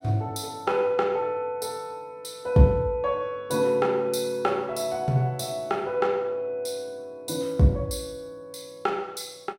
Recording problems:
none

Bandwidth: 16 kHz